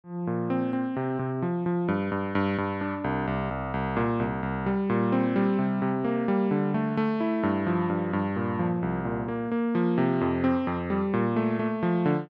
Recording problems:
none

